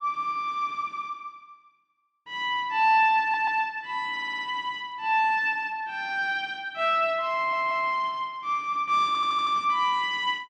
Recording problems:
stutter; 4 times, first at 3 s

